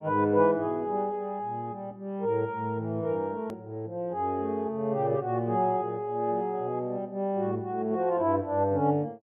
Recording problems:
treble missing; nothing above 3.5 kHz
edit click; at 3.5 s

